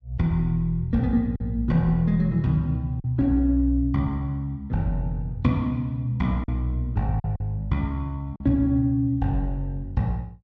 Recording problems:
packet loss; 2% of the sound replaced, filled with silence

